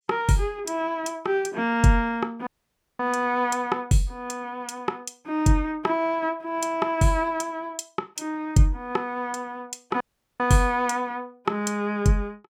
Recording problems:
audio cutting out; at 2.5 s for 0.5 s and at 10 s

